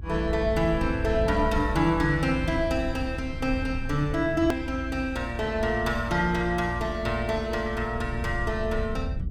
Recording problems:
rumble; below 88 Hz, SNR 8 dB
click at an edit; at 4.5 s

